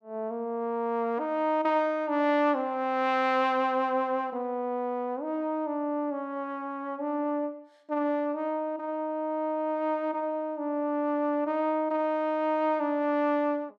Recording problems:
none

